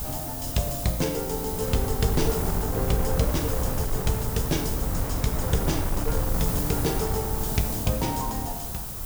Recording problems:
hiss; SNR 3 dB
wind noise; below 170 Hz, SNR 3 dB

